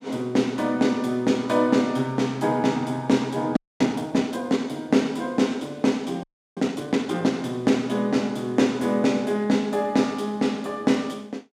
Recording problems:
frozen audio; at 3.5 s and at 6 s

